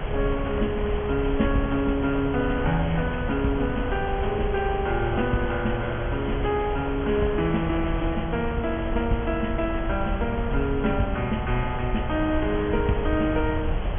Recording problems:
treble cut off; nothing above 3.3 kHz
hiss; SNR 9 dB
low-frequency rumble; below 94 Hz, SNR 6 dB

